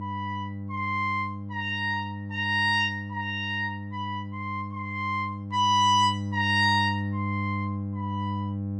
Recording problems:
hum; 50 Hz, harmonics up to 600 Hz, SNR 7 dB

